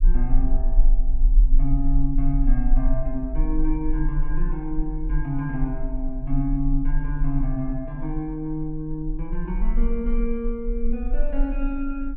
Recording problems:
rumble; below 34 Hz, strongest tone 22 Hz, SNR -2 dB

